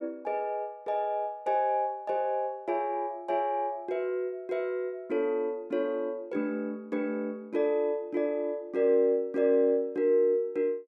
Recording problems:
none

